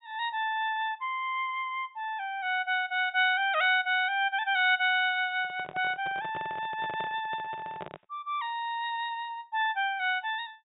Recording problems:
low-pass filter; nothing above 4 kHz
handling noise; from 5.5 to 8 s; peak -7 dB vs average level

